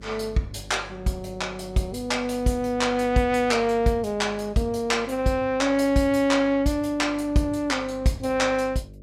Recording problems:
hum; 50 Hz, harmonics up to 600 Hz, SNR 21 dB

